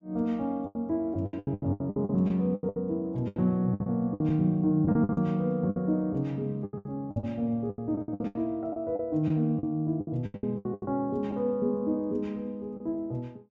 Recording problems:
packet loss; 16% of the sound replaced, filled with the last packet

